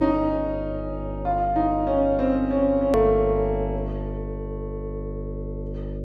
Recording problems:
electrical hum; 50 Hz, harmonics up to 600 Hz, SNR 9 dB
edit click; at 3 s

